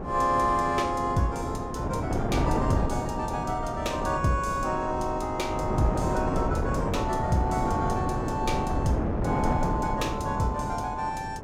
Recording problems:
wind noise; below 490 Hz, SNR 2 dB

